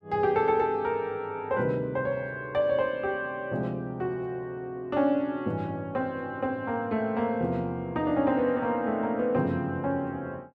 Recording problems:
none

